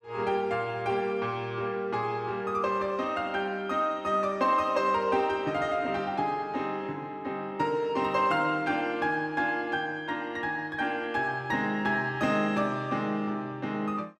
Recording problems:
none

